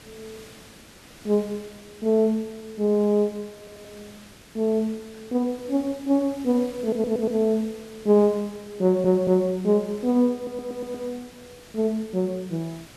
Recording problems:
background hiss; slope -3 dB per octave, SNR 22 dB
audio stuttering; 4 times, first at 3.5 s

